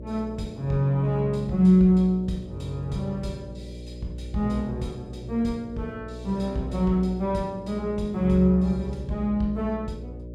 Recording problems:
hum; 60 Hz, harmonics up to 600 Hz, SNR 14 dB

